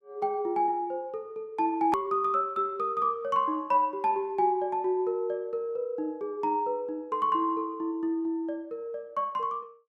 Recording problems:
click at an edit; at 2 s

